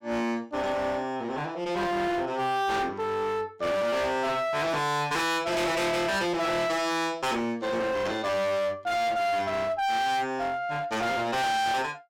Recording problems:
distortion; hard clipping, uneven, signal-to-distortion ratio 6 dB

